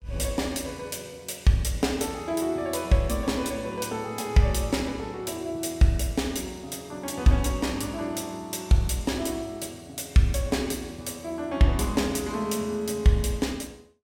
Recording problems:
none

